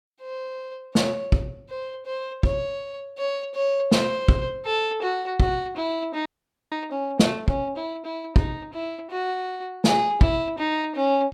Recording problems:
audio freezing; at 6.5 s

